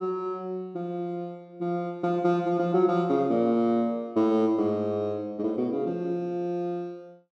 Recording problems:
none

